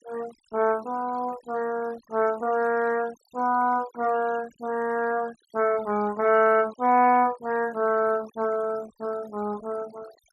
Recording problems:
noise reduction artefacts; signal-to-artefact ratio 21 dB

